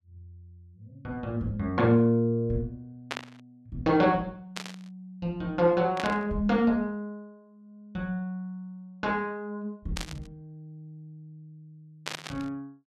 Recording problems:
static burst; 5 times, first at 3 s; peak 0 dB vs average level

